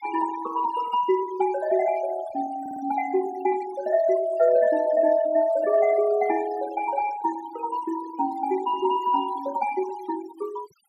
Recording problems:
noise reduction artefacts; signal-to-artefact ratio 16 dB
stutter; at 2.5 s

